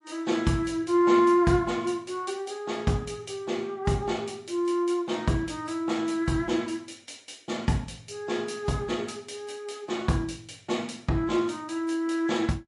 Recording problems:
lossy codec; MP3, log-spectral distance 2 dB, nothing above 10.4 kHz

